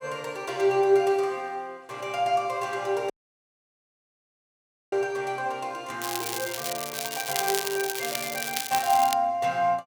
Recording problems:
audio cutting out; at 3 s for 2 s
crackle; from 6 to 9 s; loose cable, SNR 4 dB

